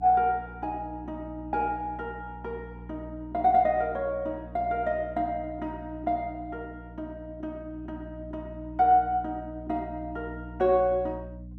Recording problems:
hum; 60 Hz, harmonics up to 300 Hz, SNR 15 dB

